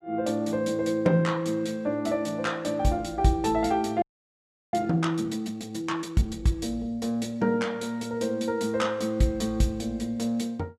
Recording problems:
frozen audio; at 4 s for 0.5 s

